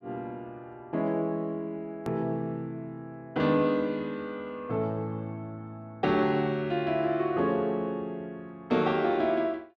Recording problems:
edit click; at 2 s

